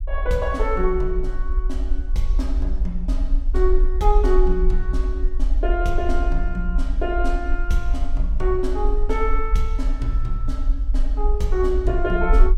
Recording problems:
low-frequency rumble; below 46 Hz, SNR -1 dB

